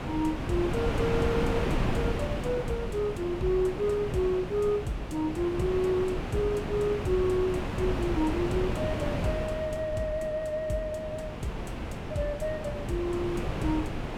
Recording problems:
wind noise; below 630 Hz, SNR 3 dB

